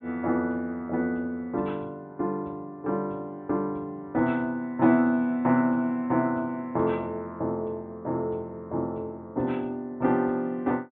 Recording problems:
low-pass filter; nothing above 4 kHz

